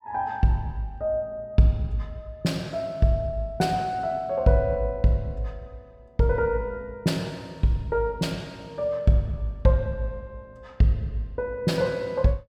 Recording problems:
none

